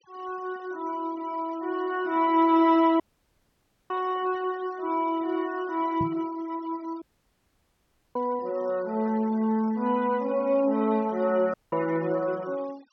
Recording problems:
treble cut off; nothing above 6.1 kHz
noise reduction artefacts; signal-to-artefact ratio 25 dB
audio cutting out; at 3 s for 1 s, at 7 s for 1 s and at 12 s
microphone bump; at 6 s; peak -2 dB vs average level

